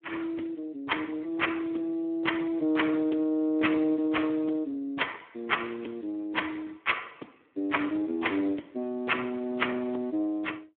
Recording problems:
telephone audio; 220 Hz to 3.4 kHz, Speex

